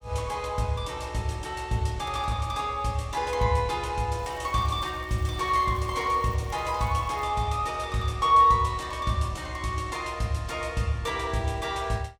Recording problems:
crackle; from 4 to 7 s; loose cable, SNR 28 dB

